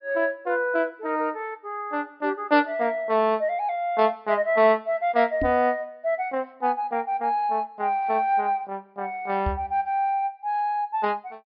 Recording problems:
low-pass filter; nothing above 5.5 kHz
microphone thump; at 5.5 s and at 9.5 s; peak -1 dB vs average level

